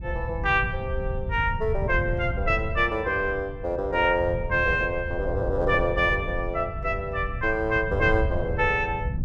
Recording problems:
wind noise; below 110 Hz, SNR 7 dB

